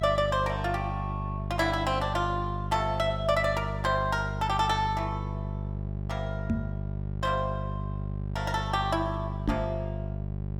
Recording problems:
hum; 50 Hz, harmonics up to 600 Hz, SNR 4 dB
microphone thump; at 6.5 s and at 9.5 s; peak +4 dB vs average level

